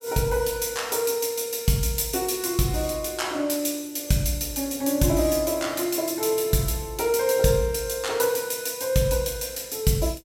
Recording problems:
none

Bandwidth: 16 kHz